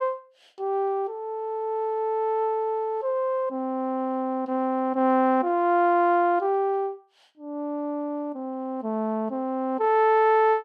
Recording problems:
none

